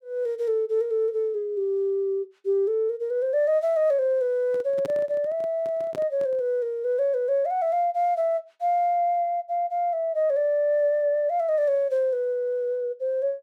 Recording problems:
microphone handling noise; from 4.5 to 6.5 s; peak -7 dB vs average level

